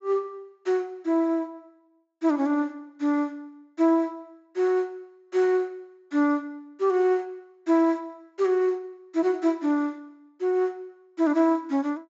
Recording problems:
treble cut off; nothing above 7.6 kHz

